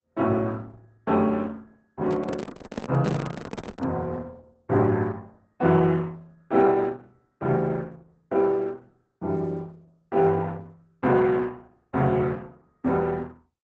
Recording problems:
lossy compression; Opus, log-spectral distance 3 dB
microphone handling noise; from 2 to 4 s; peak -1 dB vs average level

